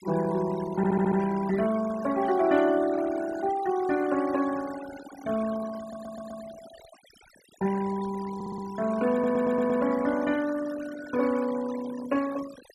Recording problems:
noise reduction artefacts; signal-to-artefact ratio 15 dB
stutter; 4 times, first at 1 s

